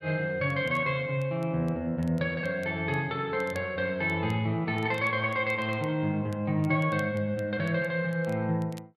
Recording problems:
crackling; vinyl, SNR 28 dB

